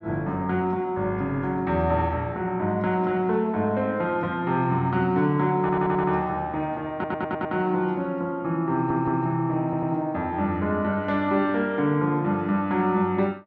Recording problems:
stutter; 4 times, first at 5.5 s

